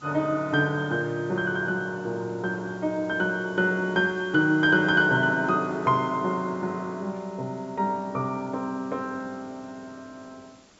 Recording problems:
low-pass filter; nothing above 8 kHz
background hiss; slope -3 dB per octave, SNR 27 dB

